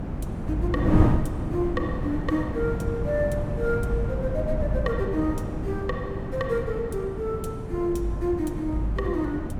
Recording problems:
wind noise; below 250 Hz, SNR 1 dB

